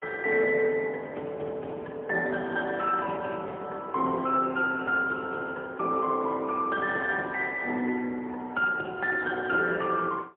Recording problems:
telephone audio; 190 Hz to 2.8 kHz, AMR-NB, then MP3

